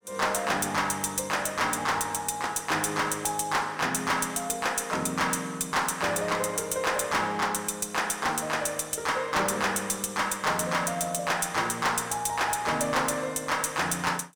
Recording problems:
distortion; hard clipping, uneven, signal-to-distortion ratio 11 dB

